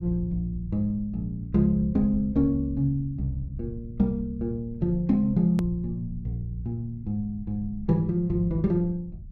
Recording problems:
rumble; below 120 Hz, SNR 15 dB
click at an edit; at 5.5 s

